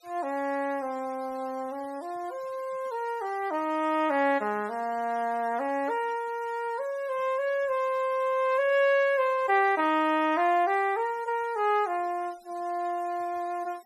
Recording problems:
noise reduction artefacts; signal-to-artefact ratio 25 dB

